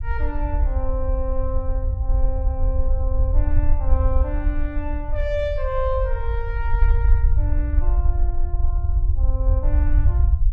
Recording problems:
rumble; below 66 Hz, SNR -8 dB

